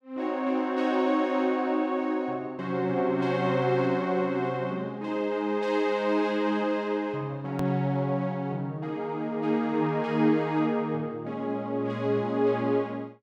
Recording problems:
edit click; at 7.5 s

